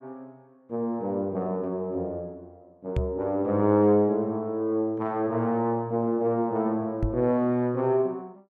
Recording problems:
knock on the microphone; at 3 s and at 7 s; peak +2 dB vs average level

